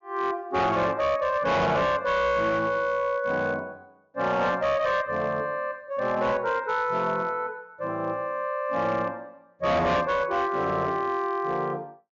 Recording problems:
treble missing; nothing above 7 kHz
distortion; hard clipping, signal-to-distortion ratio 11 dB

